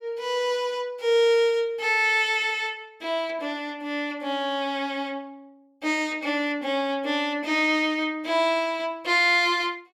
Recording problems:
none

